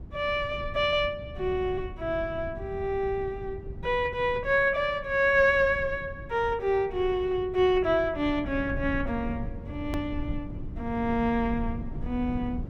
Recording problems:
low-frequency rumble; below 140 Hz, SNR 12 dB
hard cut with a click; at 10 s

